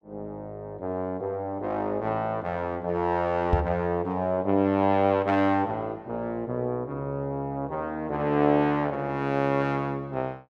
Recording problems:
knock on the microphone; at 3.5 s; peak +7 dB vs average level

